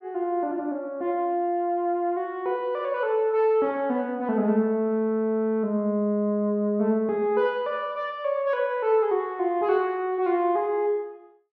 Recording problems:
none

